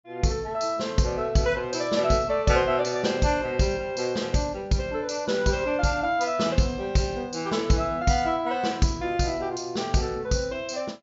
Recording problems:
treble missing; nothing above 7.5 kHz

